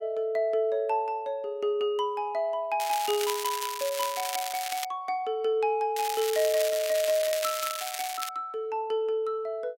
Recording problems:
crackle; from 3 to 5 s and from 6 to 8.5 s; loose cable, SNR 5 dB

